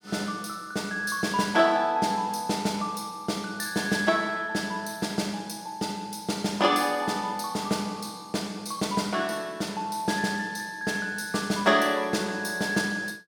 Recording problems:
none

